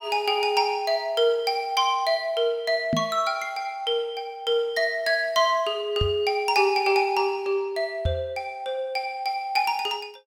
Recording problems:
knock on the microphone; at 3 s, at 6 s and at 8 s; peak +2 dB vs average level

